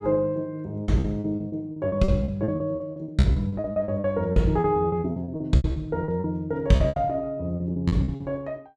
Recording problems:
packet loss; 19% of the sound replaced, filled with repeated pitch periods

